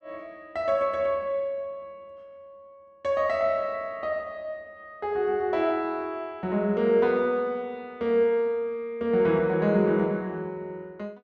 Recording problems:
none

